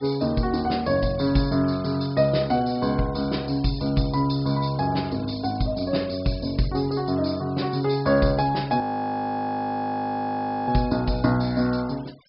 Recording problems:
low-pass filter; nothing above 5.3 kHz
denoising artefacts; signal-to-artefact ratio 23 dB
audio freezing; at 9 s for 2 s

